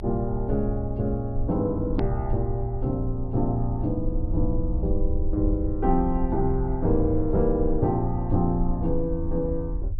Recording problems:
treble cut off; nothing above 5.5 kHz
low-frequency rumble; below 60 Hz, strongest tone 20 Hz, SNR 5 dB
click at an edit; at 2 s

